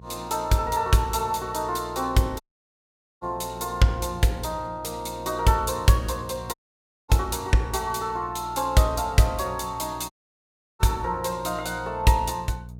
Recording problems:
hum; 60 Hz, harmonics up to 480 Hz, SNR 18 dB
audio cutting out; at 2.5 s for 1 s, at 6.5 s for 0.5 s and at 10 s for 0.5 s

